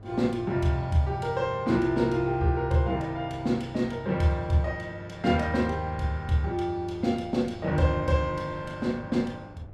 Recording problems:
hum; 50 Hz, harmonics up to 600 Hz, SNR 18 dB
wind noise; below 560 Hz, SNR 24 dB

